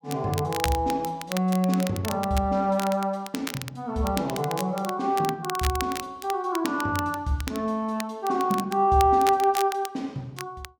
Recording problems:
crackling; vinyl, SNR 12 dB

